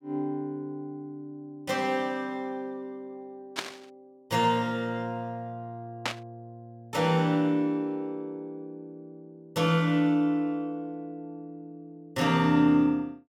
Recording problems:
static burst; at 3.5 s and at 6 s; peak +2 dB vs average level

